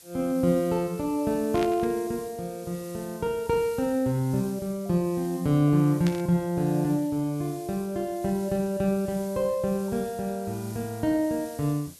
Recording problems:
background hiss; SNR 20 dB
static burst; at 1.5 s and at 6 s; peak -5 dB vs average level

